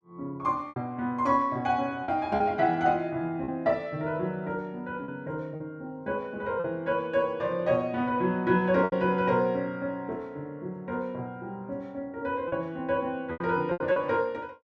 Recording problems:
lost packets; 4% of the sound replaced, filled with repeated pitch periods

